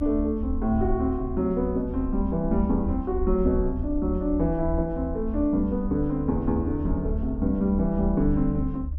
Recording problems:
low-frequency rumble; below 72 Hz, SNR 7 dB

